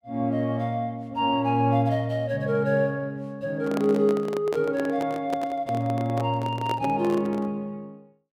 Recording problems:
handling noise; from 3.5 to 7.5 s; peak -2 dB vs average level

